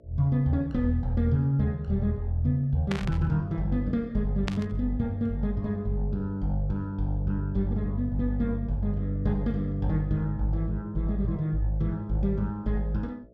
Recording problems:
electrical hum; 60 Hz, harmonics up to 660 Hz, SNR 27 dB
burst of static; at 3 s and at 4.5 s; peak -2 dB vs average level

